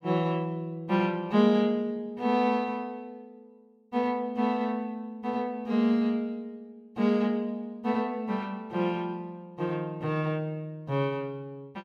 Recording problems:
none

